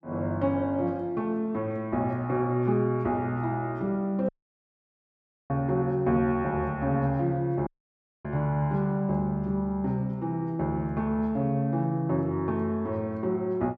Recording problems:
audio cutting out; at 4.5 s for 1 s and at 7.5 s for 0.5 s

